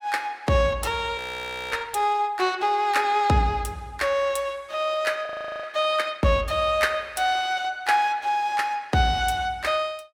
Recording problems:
audio freezing; at 1 s for 0.5 s and at 5.5 s

